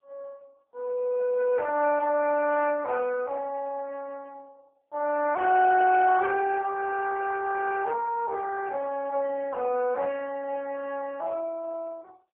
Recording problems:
phone line; 320 Hz to 3.3 kHz, AMR-NB

